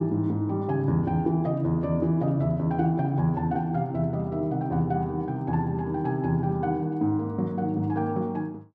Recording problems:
none

